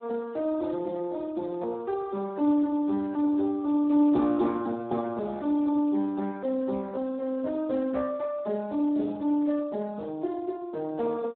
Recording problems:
phone line; 220 Hz to 2.1 kHz, Speex

